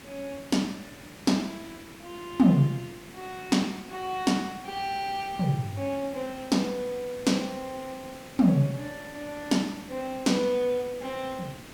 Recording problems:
background hiss; slope -3 dB per octave, SNR 17 dB

